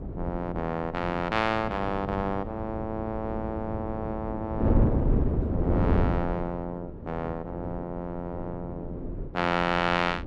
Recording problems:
wind on the microphone; below 270 Hz, SNR 1 dB

